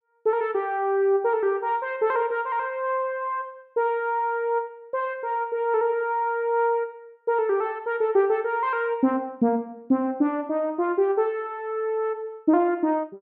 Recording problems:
none

